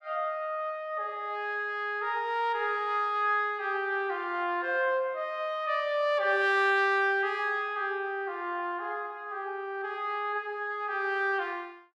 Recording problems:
none

